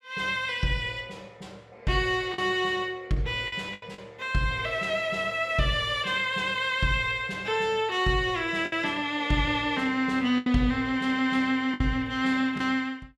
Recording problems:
packet loss; 3% of the sound replaced, filled with the last packet

